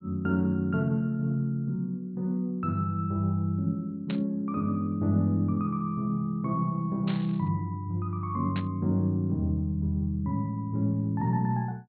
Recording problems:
low-pass filter; nothing above 4.4 kHz
burst of static; at 4 s, at 7 s and at 8.5 s; peak -7 dB vs average level

